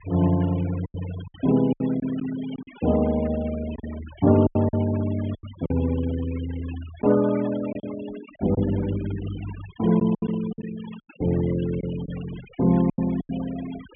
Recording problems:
treble missing; nothing above 3.4 kHz
denoising artefacts; signal-to-artefact ratio 18 dB
lost packets; 8% of the sound replaced, filled with silence

